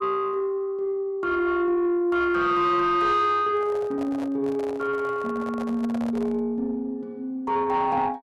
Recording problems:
distortion; soft clipping, signal-to-distortion ratio 11 dB
microphone handling noise; from 3.5 to 6.5 s; peak -7 dB vs average level

